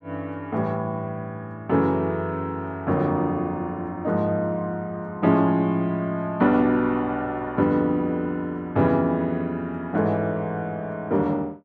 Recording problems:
none

